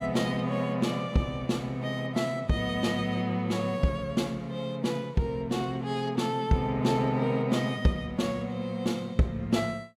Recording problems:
none

